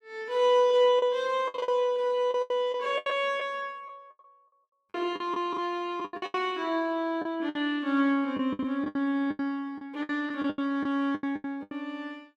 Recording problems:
packet loss; 14% of the sound replaced, filled with the last packet

